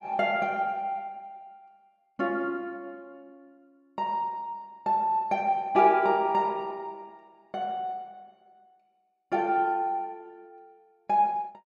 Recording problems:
none

